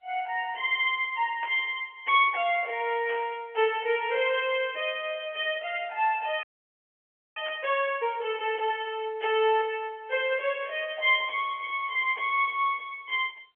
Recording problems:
telephone audio; 280 Hz to 3.3 kHz, G.711
burst of static; at 1.5 s, at 3 s and at 7.5 s; peak -11 dB vs average level
frozen audio; at 6.5 s for 1 s

